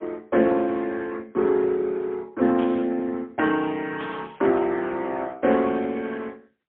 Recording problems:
telephone audio; 190 Hz to 3.6 kHz, AMR-NB, then MP3
static burst; at 2.5 s and at 4 s; peak -10 dB vs average level

